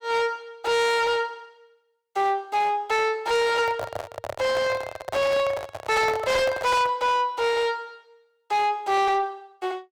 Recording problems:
distortion; soft clipping, signal-to-distortion ratio 8 dB
handling noise; from 3.5 to 7 s; peak -3 dB vs average level

